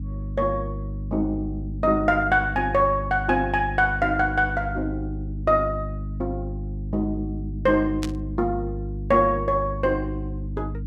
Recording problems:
hum; 50 Hz, harmonics up to 300 Hz, SNR 8 dB
burst of static; at 8 s; peak -5 dB vs average level

